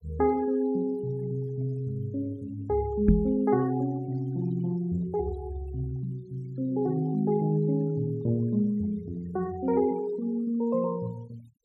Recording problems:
denoising artefacts; signal-to-artefact ratio 25 dB
microphone thump; at 3 s; peak +9 dB vs average level

